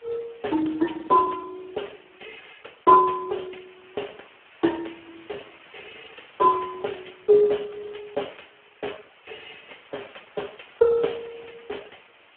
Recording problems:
phone line; 280 Hz to 3.4 kHz, Speex
hiss; SNR 26 dB

